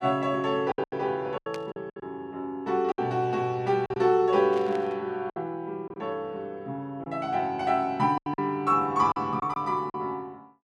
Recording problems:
packet loss; 8% of the sound replaced, filled with silence
burst of static; at 1.5 s and at 4.5 s; peak -9 dB vs average level

